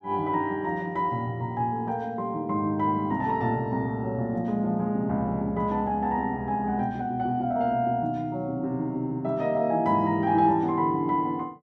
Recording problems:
none

